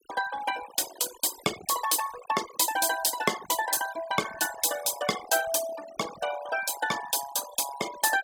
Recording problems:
noise reduction artefacts; signal-to-artefact ratio 13 dB

